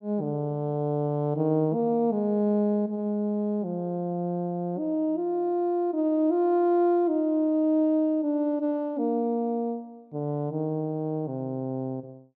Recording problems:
none

